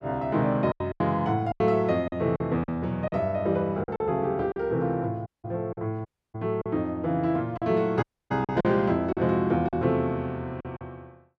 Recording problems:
lost packets; 8% of the sound replaced, filled with silence
audio cutting out; at 5.5 s, at 6 s and at 8 s

